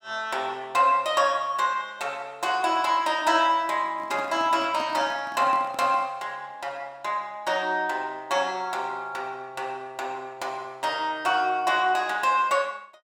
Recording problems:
microphone handling noise; from 4 to 6 s; peak -9 dB vs average level

